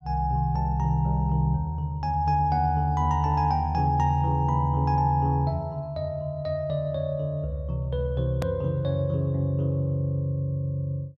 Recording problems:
click at an edit; at 8.5 s

